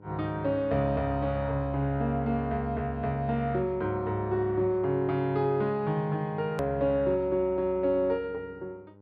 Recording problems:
treble missing; nothing above 5.5 kHz
electrical hum; 50 Hz, harmonics up to 1.1 kHz, SNR 25 dB
hard cut with a click; at 6.5 s

